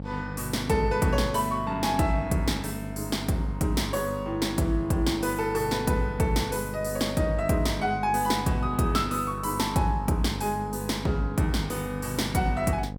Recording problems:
electrical hum; 50 Hz, harmonics up to 1 kHz, SNR 10 dB

